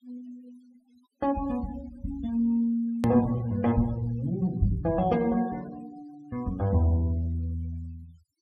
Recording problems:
noise reduction artefacts; signal-to-artefact ratio 23 dB
hard cut with a click; at 3 s

